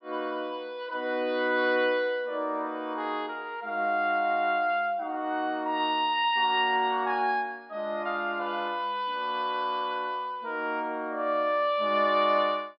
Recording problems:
treble missing; nothing above 5.4 kHz

